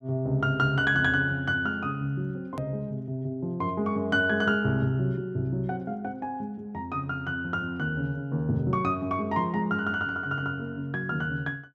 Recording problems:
click at an edit; at 2.5 s

